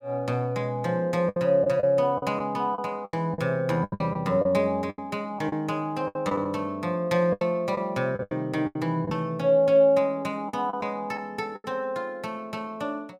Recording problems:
packet loss; 9% of the sound replaced, filled with the last packet

